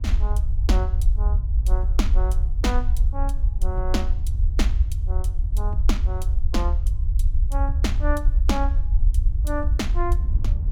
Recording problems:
low-frequency rumble; below 62 Hz, SNR -7 dB
wind noise; below 66 Hz, SNR 4 dB

